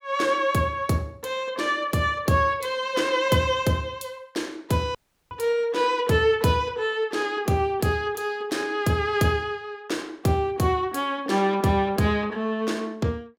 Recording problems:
dropout; at 5 s

